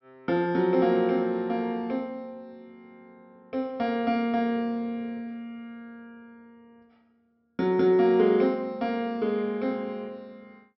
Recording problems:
low-pass filter; nothing above 5.7 kHz

